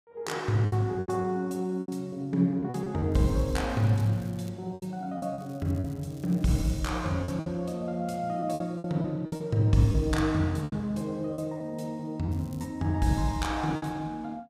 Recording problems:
packet loss; 8% of the sound replaced, filled with repeated pitch periods
crackle; from 3 to 4.5 s, from 5.5 to 7 s and at 12 s; loose cable, SNR 27 dB

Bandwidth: 15.5 kHz